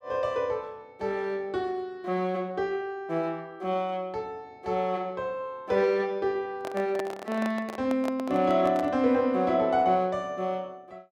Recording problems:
handling noise; from 6.5 to 9 s; peak -3 dB vs average level

